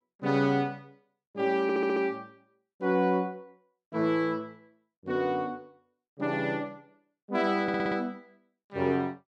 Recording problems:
stutter; at 1.5 s and at 7.5 s

